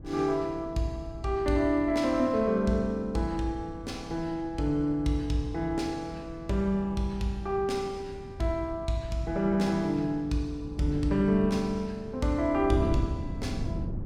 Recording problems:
wind on the microphone; below 190 Hz, SNR 12 dB

